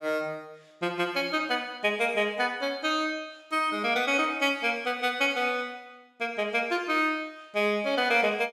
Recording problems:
none

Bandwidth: 16 kHz